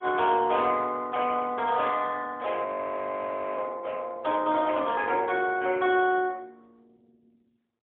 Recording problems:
telephone audio; 260 Hz to 3.4 kHz, AMR-NB, then MP3
frozen audio; at 2.5 s for 1 s

